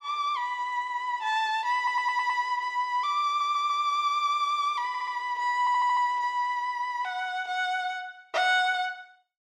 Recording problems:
stutter; 4 times, first at 2 s

